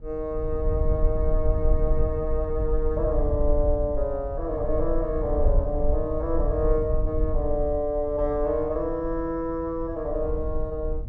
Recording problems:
low-frequency rumble; below 60 Hz, SNR 2 dB

